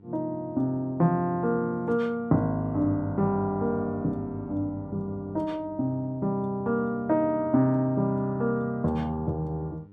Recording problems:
electrical hum; 50 Hz, harmonics up to 900 Hz, SNR 25 dB

